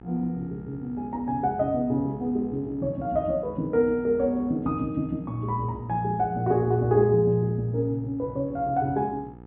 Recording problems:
treble missing; nothing above 4 kHz
hum; 60 Hz, harmonics up to 1.4 kHz, SNR 20 dB

